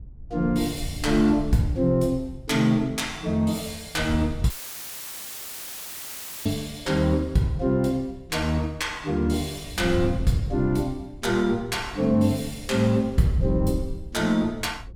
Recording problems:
wind on the microphone; below 110 Hz, SNR 12 dB
audio cutting out; at 4.5 s for 2 s; filled with static

